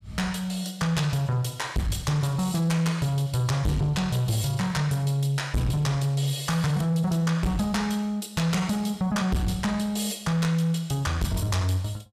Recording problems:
distorted audio; soft clipping, signal-to-distortion ratio 7 dB

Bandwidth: 15.5 kHz